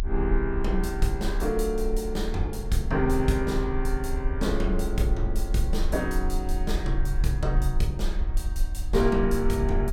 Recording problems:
low-frequency rumble; below 48 Hz, strongest tone 26 Hz, SNR 3 dB

